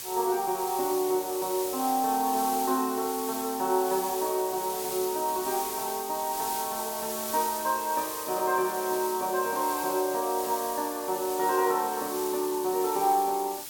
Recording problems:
hiss; slope +1 dB per octave, SNR 7 dB

